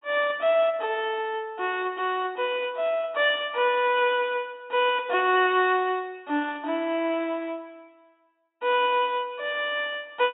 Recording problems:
treble missing; nothing above 4 kHz

